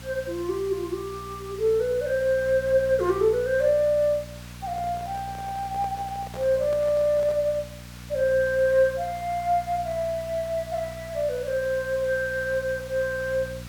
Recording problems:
mains hum; 60 Hz, harmonics up to 540 Hz, SNR 17 dB
background hiss; slope 0 dB per octave, SNR 20 dB
handling noise; from 4.5 to 7.5 s; peak -12 dB vs average level

